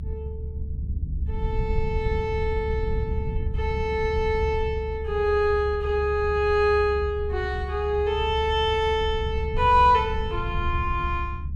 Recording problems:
rumble; below 86 Hz, SNR 6 dB

